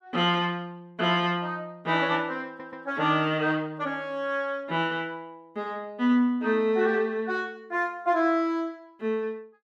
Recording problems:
audio stuttering; at 2.5 s

